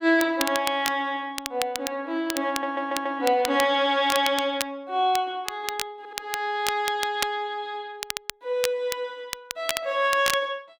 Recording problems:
crackle; vinyl, SNR 7 dB
audio stuttering; at 2.5 s and at 6 s

